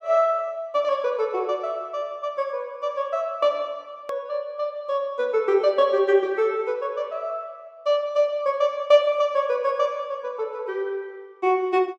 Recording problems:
click at an edit; at 4 s

